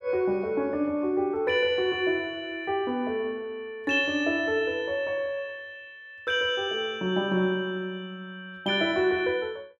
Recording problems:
none

